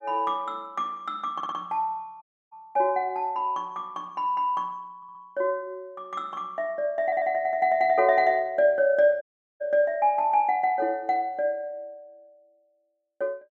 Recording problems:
stutter; at 1.5 s, at 5 s and at 7 s
audio cutting out; at 2 s and at 9 s

